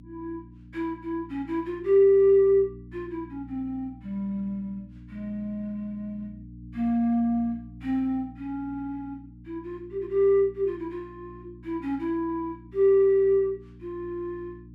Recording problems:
hum; 60 Hz, harmonics up to 300 Hz, SNR 21 dB

